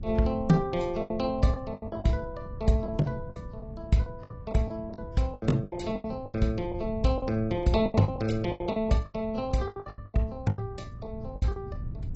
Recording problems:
lossy codec; AAC, log-spectral distance 2 dB, nothing above 8 kHz
mains hum; 60 Hz, harmonics up to 540 Hz, SNR 22 dB
low-frequency rumble; below 110 Hz, SNR 14 dB
packet loss; 15% of the sound replaced, filled with the last packet

